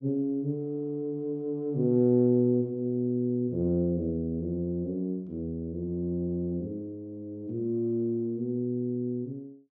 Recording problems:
none

